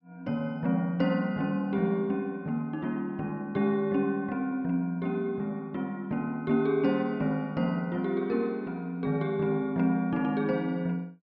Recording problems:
none

